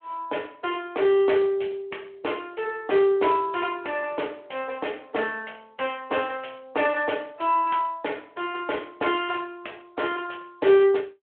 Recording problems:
phone line; 320 Hz to 3.3 kHz, Speex

